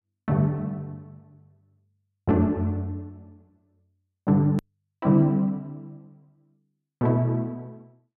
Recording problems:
edit click; at 4.5 s

